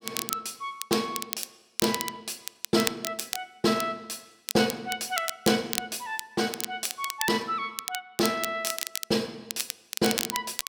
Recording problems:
crackling; vinyl, SNR 4 dB

